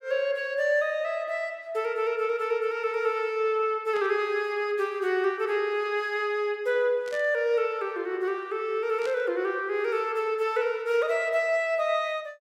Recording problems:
burst of static; at 4 s, at 7 s and at 9 s; peak -11 dB vs average level

